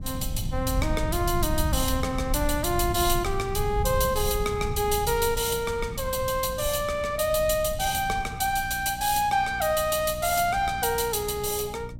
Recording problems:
hum; 60 Hz, harmonics up to 600 Hz, SNR 18 dB
low-frequency rumble; below 110 Hz, SNR 8 dB

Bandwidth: 16 kHz